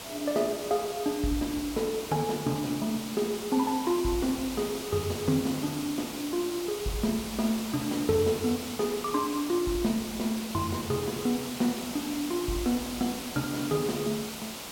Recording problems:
hiss; SNR 8 dB

